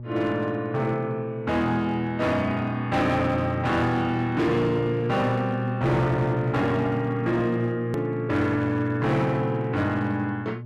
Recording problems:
distortion; hard clipping, signal-to-distortion ratio 12 dB
hum; 60 Hz, harmonics up to 600 Hz, SNR 7 dB
hard cut with a click; at 8 s

